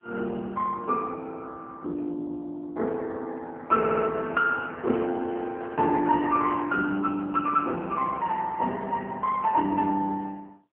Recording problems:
phone line; 220 Hz to 3.2 kHz, AMR-NB
stutter; at 4 s
microphone handling noise; from 5.5 to 9 s; peak -11 dB vs average level

